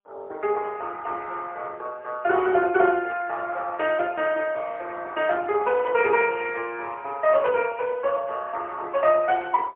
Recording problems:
phone line; 320 Hz to 3.1 kHz, AMR-NB, then MP3

